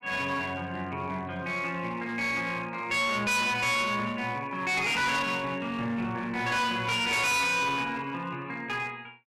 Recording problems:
distortion; hard clipping, uneven, signal-to-distortion ratio 6 dB

